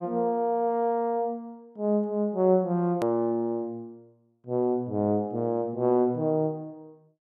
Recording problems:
hard cut with a click; at 3 s

